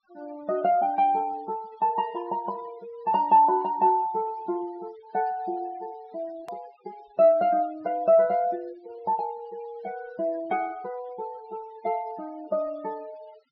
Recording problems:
treble missing; nothing above 5.5 kHz
denoising artefacts; signal-to-artefact ratio 24 dB
click at an edit; at 6.5 s

